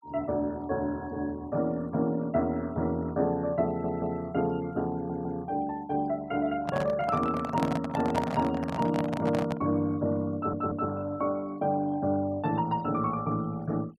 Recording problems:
noise reduction artefacts; signal-to-artefact ratio 25 dB
stutter; at 3.5 s, at 5 s and at 10 s
handling noise; from 6.5 to 9.5 s; peak +2 dB vs average level

